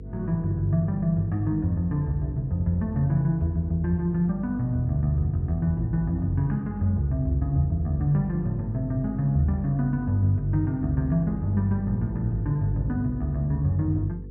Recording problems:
electrical hum; 50 Hz, harmonics up to 500 Hz, SNR 13 dB

